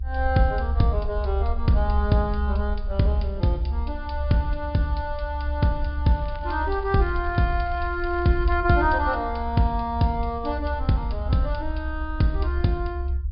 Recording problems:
low-pass filter; nothing above 5.1 kHz
rumble; below 68 Hz, SNR 5 dB
crackle; from 6 to 8.5 s; loose cable, SNR 27 dB

